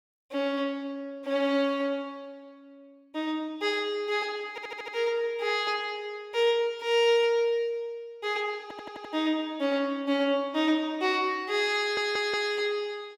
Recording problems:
audio stuttering; at 4.5 s, at 8.5 s and at 12 s

